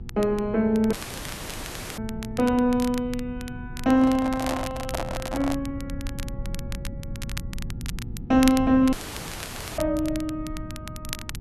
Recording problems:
mains hum; 60 Hz, harmonics up to 840 Hz, SNR 20 dB
low-frequency rumble; below 140 Hz, SNR 13 dB
crackle; vinyl, SNR 15 dB
audio cutting out; at 1 s for 1 s and at 9 s for 1 s
microphone handling noise; from 4 to 5.5 s; peak -2 dB vs average level

